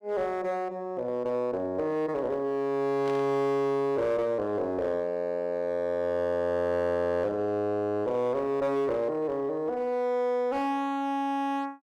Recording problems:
distortion; hard clipping, uneven, signal-to-distortion ratio 11 dB
burst of static; at 3 s; peak -12 dB vs average level

